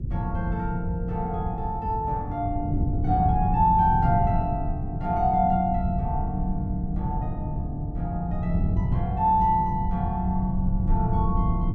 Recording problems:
hum; 50 Hz, harmonics up to 400 Hz, SNR 18 dB
rumble; below 120 Hz, SNR 5 dB
wind noise; below 140 Hz, SNR 7 dB

